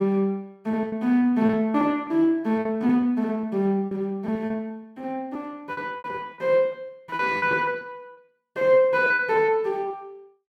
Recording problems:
lost packets; 13% of the sound replaced, filled with repeated pitch periods

